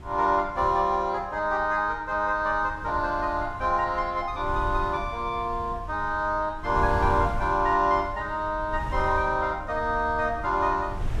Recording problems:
wind noise; below 96 Hz, SNR 12 dB

